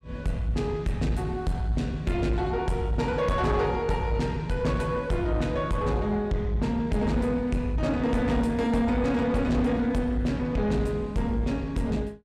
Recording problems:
distortion; soft clipping, signal-to-distortion ratio 11 dB

